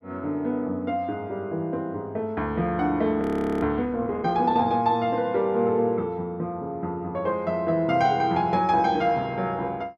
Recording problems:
audio freezing; at 3 s

